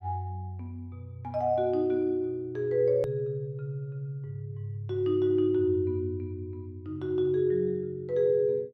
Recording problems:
edit click; at 3 s

